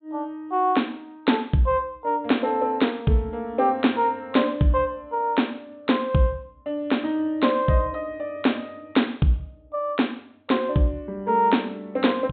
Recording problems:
treble cut off; nothing above 4 kHz

